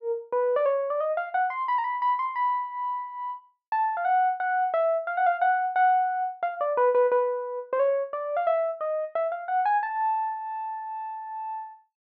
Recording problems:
none

